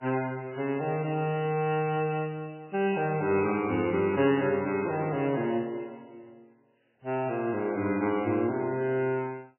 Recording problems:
lossy compression; MP3, log-spectral distance 3 dB, nothing above 2.7 kHz

